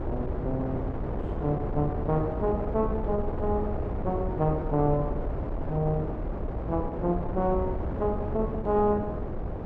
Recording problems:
wind on the microphone; below 400 Hz, SNR 3 dB

